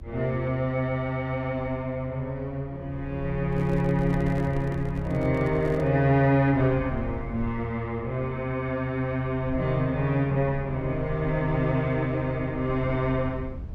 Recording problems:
rumble; below 86 Hz, SNR 13 dB
microphone handling noise; from 3.5 to 6 s; peak -7 dB vs average level

